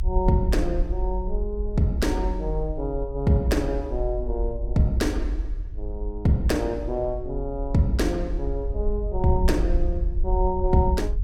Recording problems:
rumble; below 50 Hz, SNR 4 dB

